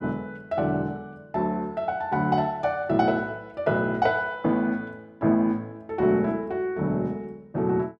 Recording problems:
none

